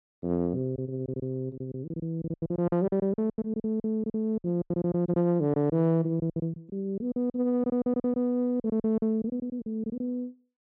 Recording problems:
packet loss; 17% of the sound replaced, filled with silence

